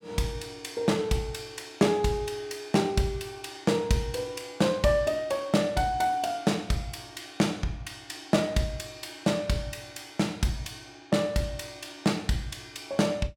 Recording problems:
none

